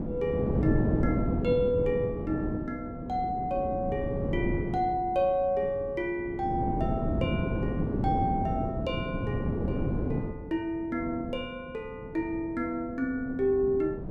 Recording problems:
wind on the microphone; below 320 Hz, SNR 1 dB

